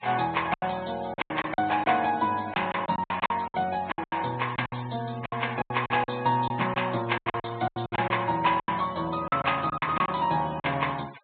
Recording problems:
treble cut off; nothing above 4 kHz
denoising artefacts; signal-to-artefact ratio 19 dB
packet loss; 15% of the sound replaced, filled with silence

